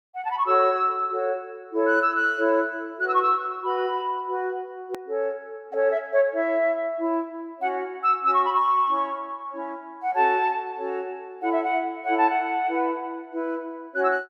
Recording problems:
hard cut with a click; at 5 s

